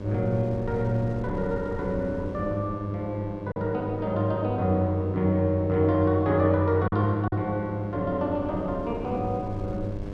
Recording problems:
electrical hum; 50 Hz, harmonics up to 1.7 kHz, SNR 12 dB
wind on the microphone; below 150 Hz, SNR 16 dB
packet loss; 1.2% of the sound replaced, filled with silence

